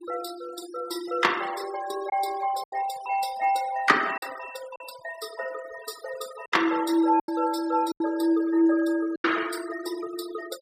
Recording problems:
noise reduction artefacts; signal-to-artefact ratio 16 dB
packet loss; 5% of the sound replaced, filled with silence

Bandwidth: 15 kHz